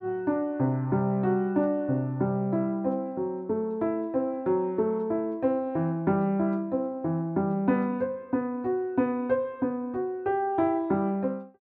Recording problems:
none

